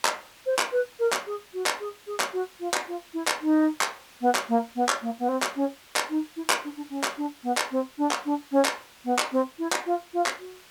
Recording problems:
hiss; SNR 23 dB

